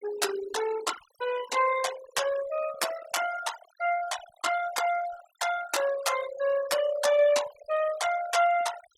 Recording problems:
noise reduction artefacts; signal-to-artefact ratio 12 dB

